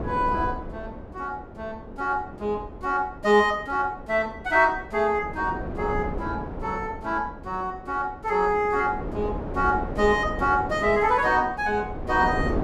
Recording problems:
wind on the microphone; below 470 Hz, SNR 11 dB

